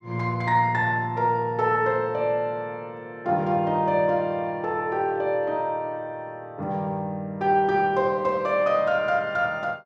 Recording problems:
none

